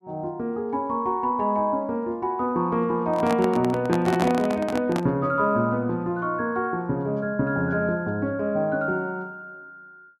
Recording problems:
handling noise; from 3 to 5 s; peak +2 dB vs average level

